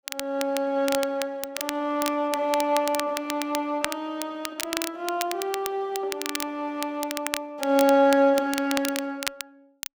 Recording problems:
crackle; vinyl, SNR 8 dB

